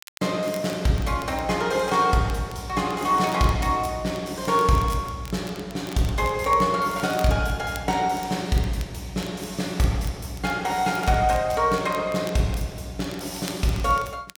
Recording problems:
crackle; vinyl, SNR 21 dB

